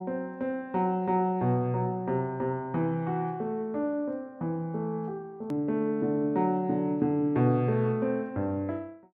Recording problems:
click at an edit; at 5.5 s

